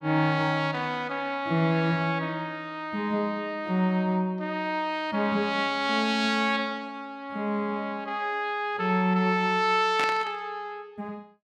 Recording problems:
burst of static; at 10 s; peak -1 dB vs average level

